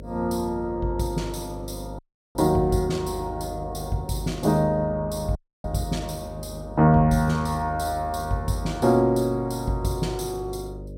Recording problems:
electrical hum; 50 Hz, harmonics up to 600 Hz, SNR 14 dB
dropout; at 2 s and at 5.5 s

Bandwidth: 16 kHz